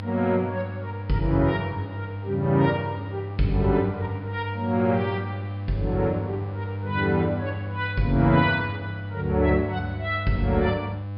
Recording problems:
treble missing; nothing above 5.5 kHz
hum; 50 Hz, harmonics up to 800 Hz, SNR 8 dB

